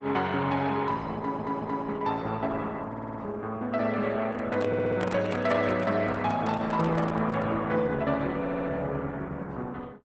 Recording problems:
lossy codec; Opus, log-spectral distance 3 dB, nothing above 7.8 kHz
audio stuttering; 4 times, first at 1 s
microphone handling noise; from 4.5 to 7.5 s; peak -1 dB vs average level

